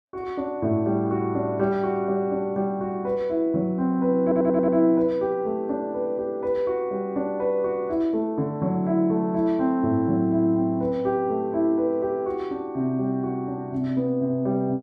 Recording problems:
audio stuttering; at 4 s

